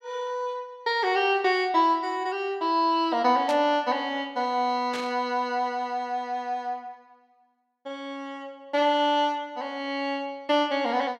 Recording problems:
static burst; at 3.5 s and at 5 s; peak -6 dB vs average level

